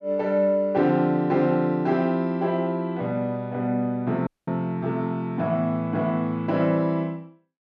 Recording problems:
dropout; at 4.5 s

